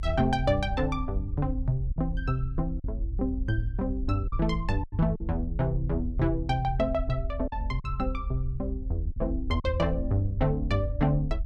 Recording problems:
low-frequency rumble; below 68 Hz, strongest tone 44 Hz, SNR 5 dB
lost packets; 4% of the sound replaced, filled with silence

